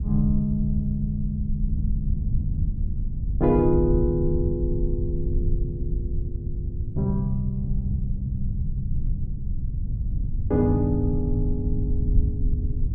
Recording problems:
rumble; below 90 Hz, SNR 1 dB

